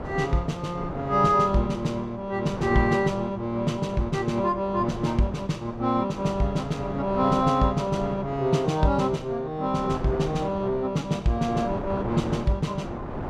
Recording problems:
wind noise; below 680 Hz, SNR 12 dB

